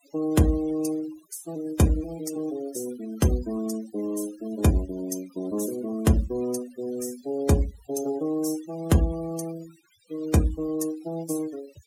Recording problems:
denoising artefacts; signal-to-artefact ratio 16 dB

